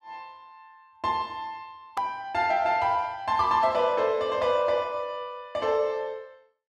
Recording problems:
edit click; at 2 s

